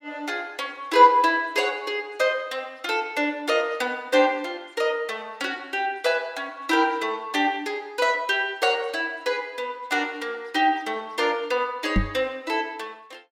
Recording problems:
microphone thump; at 12 s; peak +5 dB vs average level

